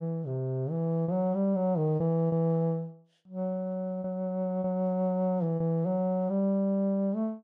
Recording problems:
lost packets; 3% of the sound replaced, filled with repeated pitch periods

